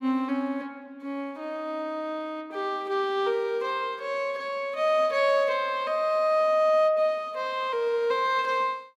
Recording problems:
none

